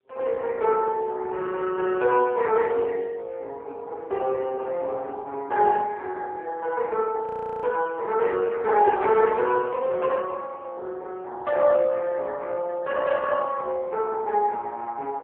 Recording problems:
phone line; 340 Hz to 3.5 kHz, AMR-NB
audio freezing; at 7.5 s

